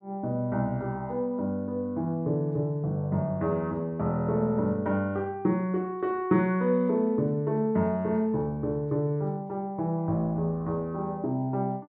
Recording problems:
none

